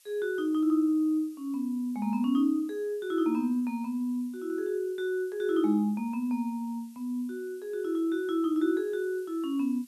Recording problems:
background hiss; slope +5 dB per octave, SNR 28 dB

